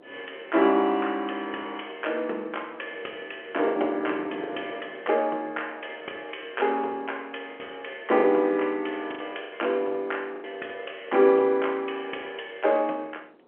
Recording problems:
phone line; 300 Hz to 3.2 kHz, G.711
wind on the microphone; below 640 Hz, SNR 21 dB
packet loss; 4% of the sound replaced, filled with the last packet

